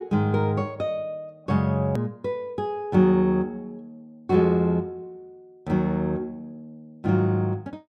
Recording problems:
edit click; at 2 s

